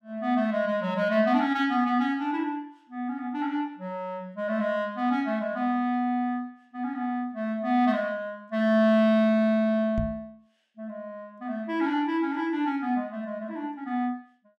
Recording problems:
microphone bump; at 10 s; peak 0 dB vs average level

